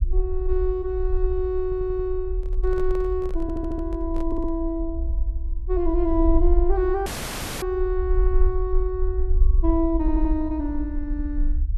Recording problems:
low-frequency rumble; below 52 Hz, SNR 1 dB
stutter; 4 times, first at 1.5 s
microphone handling noise; from 2.5 to 4.5 s; peak -10 dB vs average level
audio cutting out; at 7 s for 0.5 s

